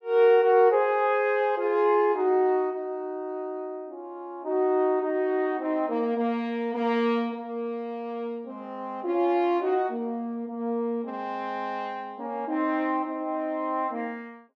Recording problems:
none

